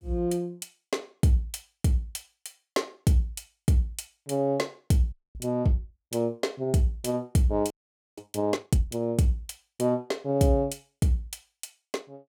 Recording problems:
frozen audio; at 5 s and at 7.5 s

